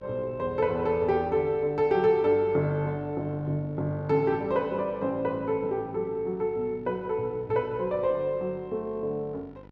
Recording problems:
electrical hum; 50 Hz, harmonics up to 1.9 kHz, SNR 23 dB

